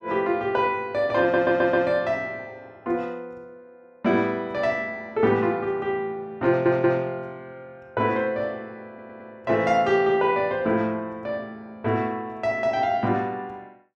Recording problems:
audio stuttering; at 1 s, at 6.5 s and at 9 s

